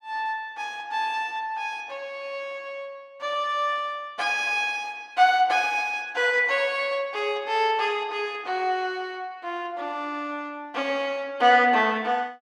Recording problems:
none

